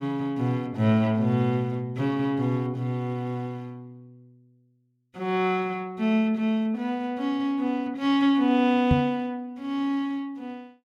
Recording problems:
knock on the microphone; at 9 s; peak +7 dB vs average level

